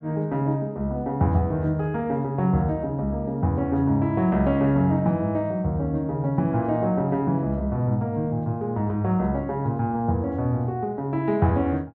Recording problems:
treble cut off; nothing above 8 kHz

